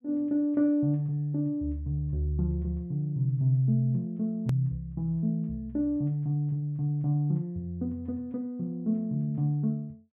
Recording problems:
treble missing; nothing above 4 kHz
edit click; at 4.5 s

